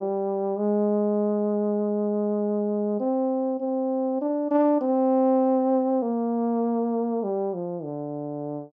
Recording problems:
none

